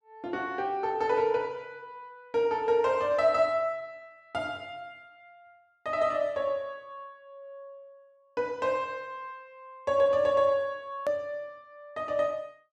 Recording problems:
click at an edit; at 11 s

